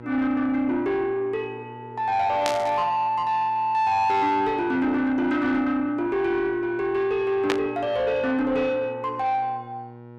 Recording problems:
distorted audio; soft clipping, signal-to-distortion ratio 11 dB
hum; 60 Hz, harmonics up to 1.4 kHz, SNR 20 dB
burst of static; at 2.5 s and at 7.5 s; peak +2 dB vs average level

